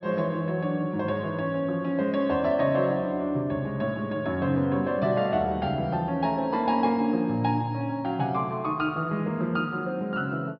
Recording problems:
low-pass filter; nothing above 5.5 kHz

